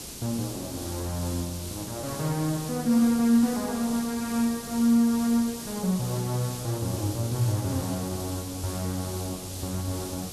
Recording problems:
hiss; SNR 10 dB

